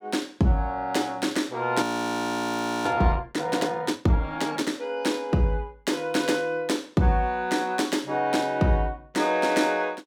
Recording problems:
frozen audio; at 2 s for 1 s

